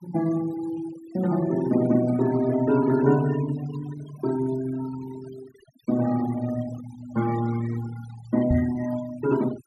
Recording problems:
noise reduction artefacts; signal-to-artefact ratio 16 dB
knock on the microphone; at 8.5 s; peak +4 dB vs average level

